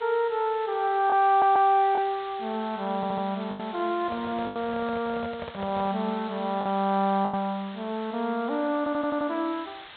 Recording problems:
treble cut off; nothing above 4 kHz
hiss; SNR 18 dB
lost packets; 4% of the sound replaced, filled with the last packet
stutter; at 1.5 s, at 3 s and at 9 s
microphone handling noise; from 4 to 6 s; peak -8 dB vs average level

